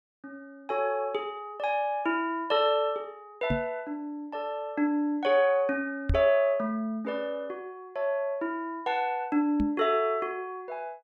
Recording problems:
microphone bump; at 3.5 s, at 6 s and at 9.5 s; peak +4 dB vs average level

